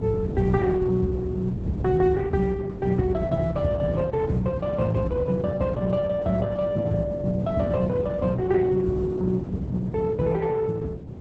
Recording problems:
codec artefacts; Opus, log-spectral distance 2 dB, nothing above 7.8 kHz
wind on the microphone; below 260 Hz, SNR 7 dB

